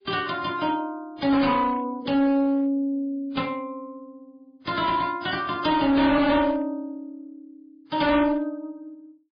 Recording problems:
lossy codec; MP3, then AAC, log-spectral distance 2 dB, nothing above 5 kHz
distorted audio; hard clipping, uneven, signal-to-distortion ratio 10 dB

